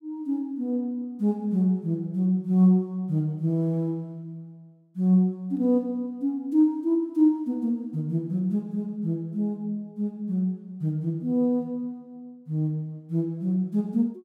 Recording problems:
none

